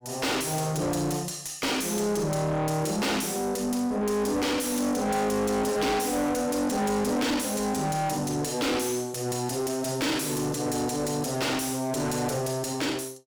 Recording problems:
distortion; soft clipping, signal-to-distortion ratio 6 dB

